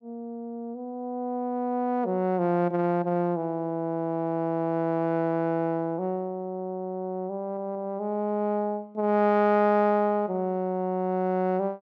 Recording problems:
audio stuttering; at 7.5 s

